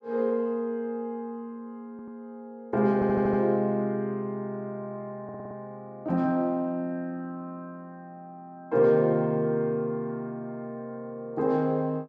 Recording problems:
audio stuttering; at 2 s, at 3 s and at 5 s

